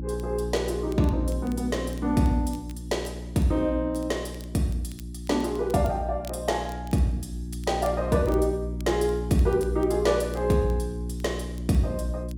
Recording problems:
hum; 60 Hz, harmonics up to 360 Hz, SNR 8 dB
crackling; vinyl, SNR 26 dB

